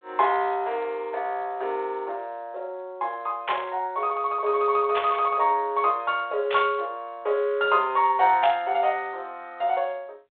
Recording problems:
phone line; 340 Hz to 3.7 kHz, G.726
static burst; 4 times, first at 3.5 s; peak -1 dB vs average level

